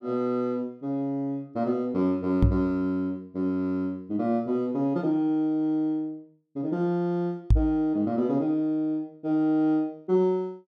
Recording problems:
microphone thump; at 2.5 s and at 7.5 s; peak +9 dB vs average level

